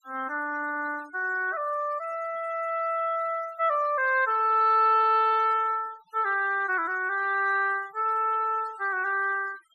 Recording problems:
noise reduction artefacts; signal-to-artefact ratio 25 dB

